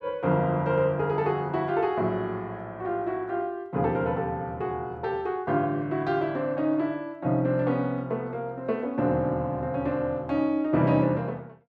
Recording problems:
none

